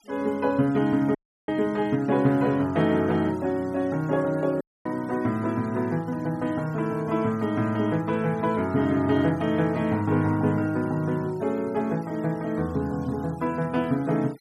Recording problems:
noise reduction artefacts; signal-to-artefact ratio 26 dB
audio cutting out; at 1 s and at 4.5 s

